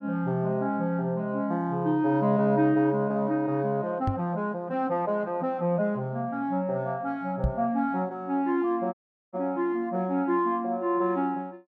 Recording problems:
microphone thump; at 4 s and at 7.5 s; peak +4 dB vs average level
audio cutting out; at 9 s

